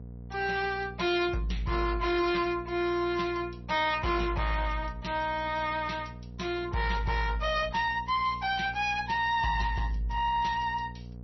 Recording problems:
codec artefacts; MP3, log-spectral distance 3 dB, nothing above 5.8 kHz
distorted audio; soft clipping, signal-to-distortion ratio 12 dB
electrical hum; 60 Hz, harmonics up to 720 Hz, SNR 15 dB

